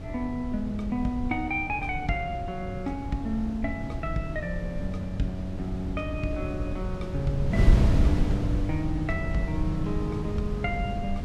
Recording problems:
wind on the microphone; below 130 Hz, SNR 0 dB

